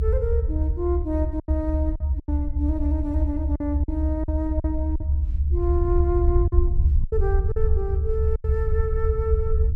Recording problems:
low-frequency rumble; below 74 Hz, SNR -4 dB
lost packets; 7% of the sound replaced, filled with silence

